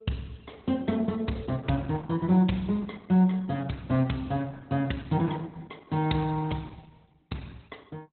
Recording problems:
codec artefacts; Opus, log-spectral distance 4 dB, nothing above 4 kHz

